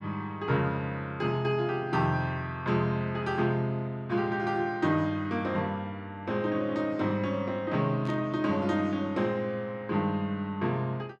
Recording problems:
static burst; at 8 s; peak -15 dB vs average level

